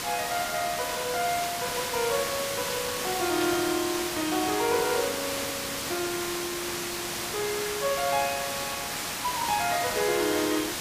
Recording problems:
hiss; slope -1 dB per octave, SNR 1 dB
burst of static; at 1.5 s and at 3.5 s; peak -2 dB vs average level

